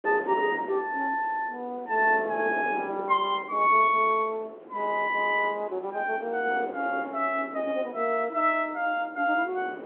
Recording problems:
telephone audio; 300 Hz to 3.5 kHz, G.711
wind on the microphone; below 610 Hz, SNR 15 dB

